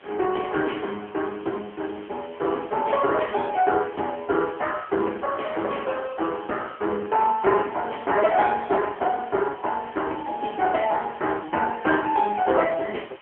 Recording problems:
telephone audio; 280 Hz to 3.3 kHz, AMR-NB
hiss; SNR 23 dB

